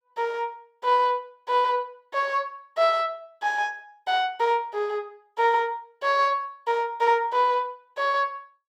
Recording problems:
none

